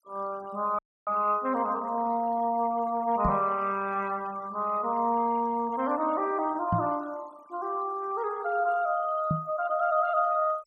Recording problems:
denoising artefacts; signal-to-artefact ratio 24 dB
dropout; at 1 s
microphone bump; at 3.5 s, at 6.5 s and at 9.5 s; peak +3 dB vs average level

